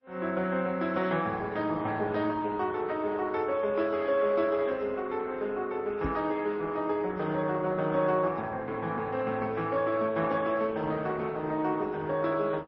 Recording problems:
lossy compression; Opus, then MP3, log-spectral distance 3 dB, nothing above 5.5 kHz
knock on the microphone; at 6 s; peak +2 dB vs average level

